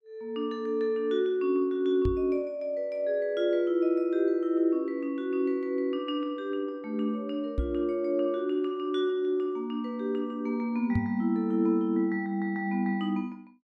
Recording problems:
knock on the microphone; at 2 s, at 7.5 s and at 11 s; peak +3 dB vs average level

